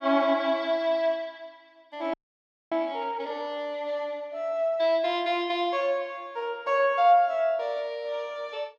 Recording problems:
frozen audio; at 2 s for 0.5 s

